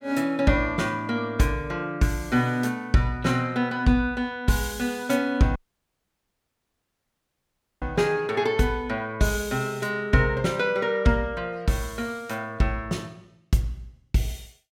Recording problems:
dropout; at 5.5 s for 2.5 s

